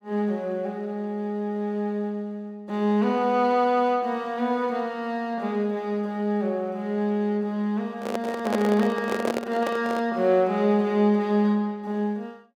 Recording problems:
microphone handling noise; from 8 to 10 s; peak +2 dB vs average level

